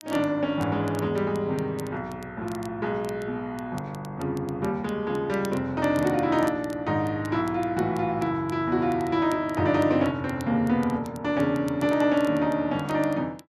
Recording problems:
crackle; vinyl, SNR 24 dB

